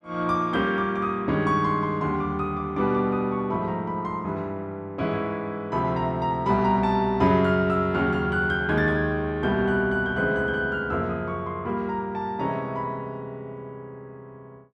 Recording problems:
none

